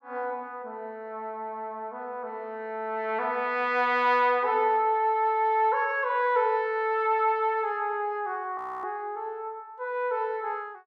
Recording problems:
audio freezing; at 8.5 s

